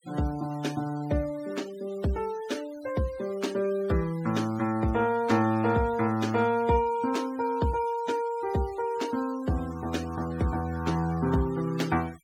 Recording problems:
noise reduction artefacts; signal-to-artefact ratio 20 dB

